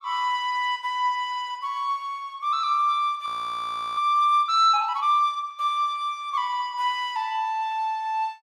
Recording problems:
audio freezing; at 3.5 s for 0.5 s

